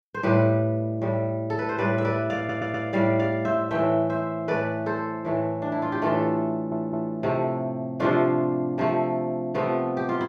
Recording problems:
audio stuttering; at 2.5 s and at 6.5 s

